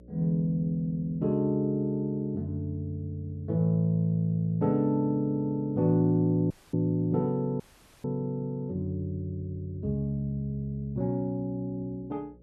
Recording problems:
electrical hum; 60 Hz, harmonics up to 600 Hz, SNR 27 dB
dropout; at 6.5 s and at 7.5 s

